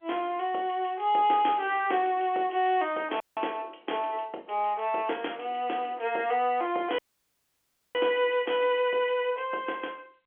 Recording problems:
phone line; 280 Hz to 3.4 kHz, G.711
audio cutting out; at 3 s and at 7 s for 1 s

